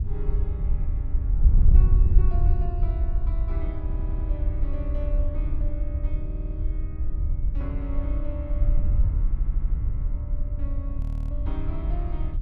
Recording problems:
wind noise; below 64 Hz, SNR -14 dB
stutter; at 4 s, at 6.5 s and at 9.5 s
audio freezing; at 11 s

